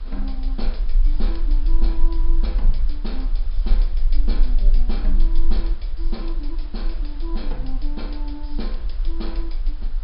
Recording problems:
treble missing; nothing above 5.5 kHz
hiss; SNR 14 dB
rumble; below 34 Hz, strongest tone 22 Hz, SNR -11 dB

